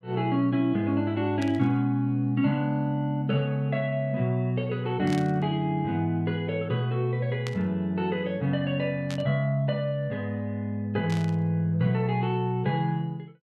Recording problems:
static burst; 5 times, first at 1.5 s; peak -7 dB vs average level

